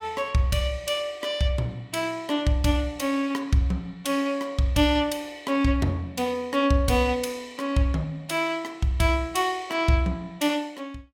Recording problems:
none

